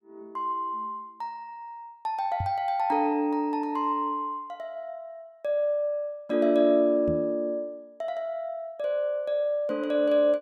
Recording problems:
microphone bump; at 2.5 s and at 7 s; peak -1 dB vs average level

